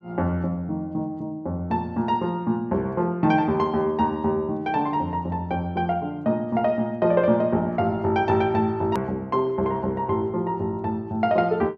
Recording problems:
hard cut with a click; at 9 s

